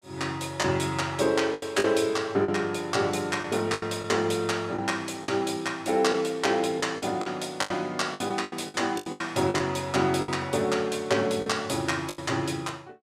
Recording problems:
lost packets; 9% of the sound replaced, filled with the last packet

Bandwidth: 15 kHz